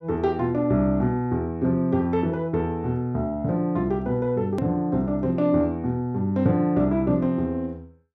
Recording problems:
hard cut with a click; at 4.5 s

